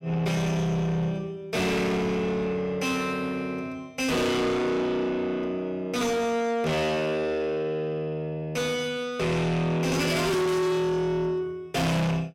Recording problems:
distortion; soft clipping, signal-to-distortion ratio 6 dB

